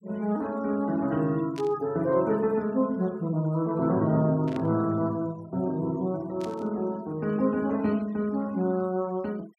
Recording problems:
denoising artefacts; signal-to-artefact ratio 26 dB
static burst; at 1.5 s, at 4.5 s and at 6.5 s; peak -12 dB vs average level

